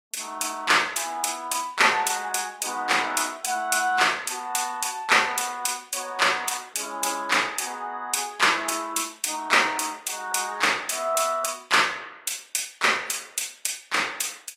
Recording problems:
codec artefacts; AAC, log-spectral distance 5 dB, nothing above 14.7 kHz

